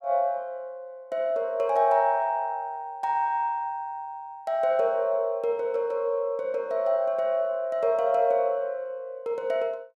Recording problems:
none

